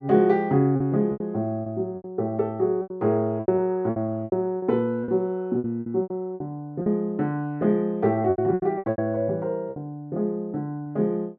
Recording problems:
lost packets; 12% of the sound replaced, filled with repeated pitch periods

